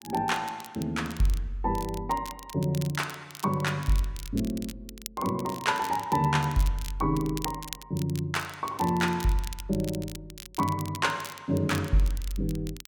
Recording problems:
crackling; vinyl, SNR 14 dB

